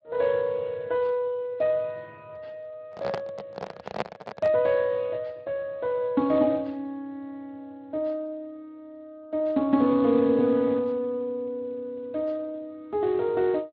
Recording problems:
lossy compression; Speex, log-spectral distance 2 dB
microphone handling noise; from 3 to 4.5 s; peak +2 dB vs average level

